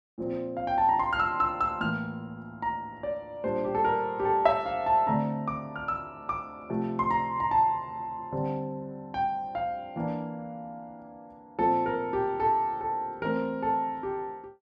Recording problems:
none

